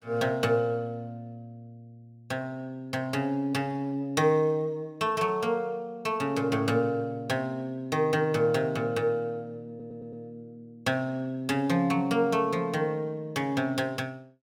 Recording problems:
audio stuttering; at 9.5 s

